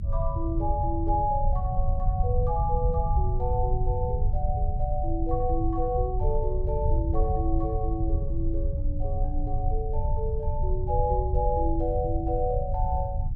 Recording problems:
low-frequency rumble; below 82 Hz, strongest tone 24 Hz, SNR -1 dB

